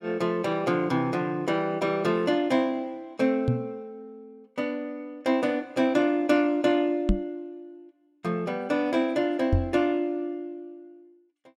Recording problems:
microphone thump; at 3.5 s, at 7 s and at 9.5 s; peak +7 dB vs average level

